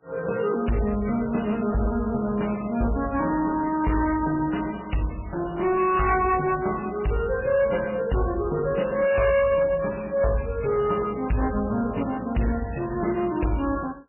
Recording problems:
lossy codec; AAC, then MP3, log-spectral distance 5 dB, nothing above 2.8 kHz
distortion; hard clipping, signal-to-distortion ratio 11 dB

